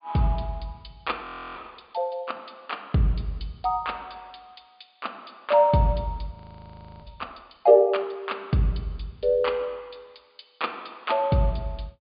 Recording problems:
low-pass filter; nothing above 4.8 kHz
frozen audio; at 1 s and at 6.5 s for 0.5 s

